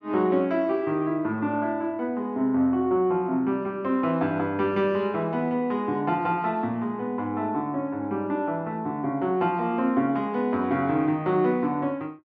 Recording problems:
none

